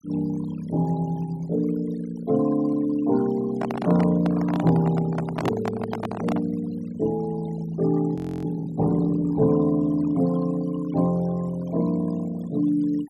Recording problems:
denoising artefacts; signal-to-artefact ratio 20 dB
microphone handling noise; from 3.5 to 6.5 s; peak 0 dB vs average level
audio freezing; at 8 s

